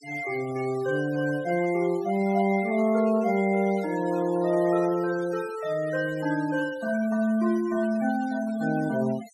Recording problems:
denoising artefacts; signal-to-artefact ratio 20 dB

